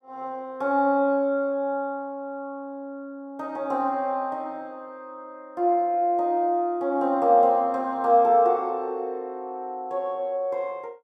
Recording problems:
none

